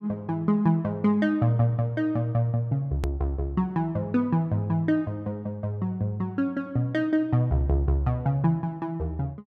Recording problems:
edit click; at 3 s

